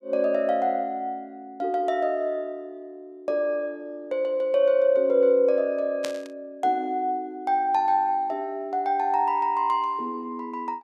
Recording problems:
burst of static; at 6 s; peak -4 dB vs average level

